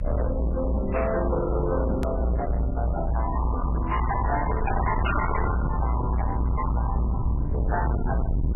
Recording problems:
lossy codec; MP3, log-spectral distance 3 dB, nothing above 2.9 kHz
distortion; hard clipping, signal-to-distortion ratio 6 dB
rumble; below 140 Hz, strongest tone 58 Hz, SNR -1 dB
click at an edit; at 2 s

